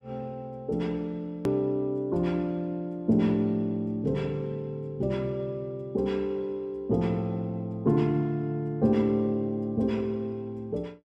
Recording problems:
hard cut with a click; at 1.5 s

